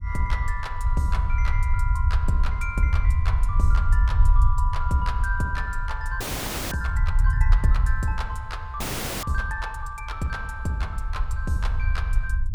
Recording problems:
rumble; below 68 Hz, SNR -5 dB
audio freezing; at 6 s for 0.5 s and at 9 s

